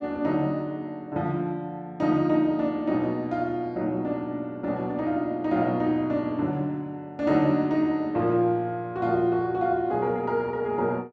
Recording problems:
none

